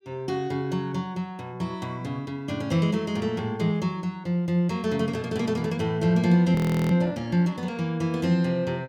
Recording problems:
frozen audio; at 6.5 s

